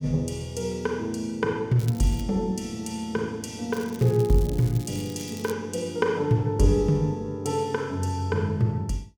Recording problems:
crackle; at 2 s and from 3.5 to 5.5 s; loose cable, SNR 18 dB

